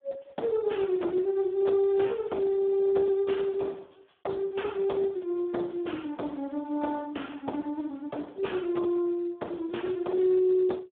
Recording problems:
phone line; 240 Hz to 3.6 kHz, Speex

